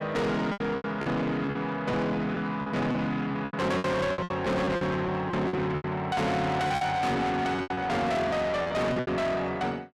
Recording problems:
distortion; soft clipping, signal-to-distortion ratio 6 dB
packet loss; 13% of the sound replaced, filled with repeated pitch periods

